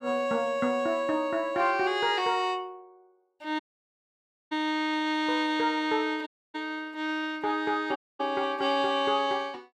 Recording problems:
audio cutting out; at 3.5 s for 1 s, at 6.5 s and at 8 s

